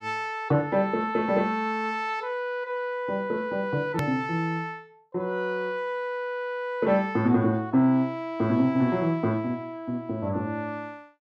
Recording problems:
hard cut with a click; at 4 s

